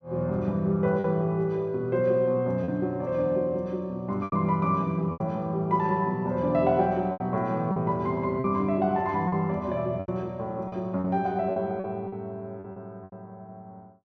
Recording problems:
packet loss; 6% of the sound replaced, filled with repeated pitch periods

